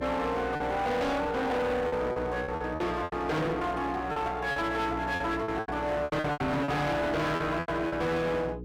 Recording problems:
distorted audio; hard clipping, uneven, signal-to-distortion ratio 6 dB
hum; 60 Hz, harmonics up to 480 Hz, SNR 11 dB
lost packets; 11% of the sound replaced, filled with repeated pitch periods

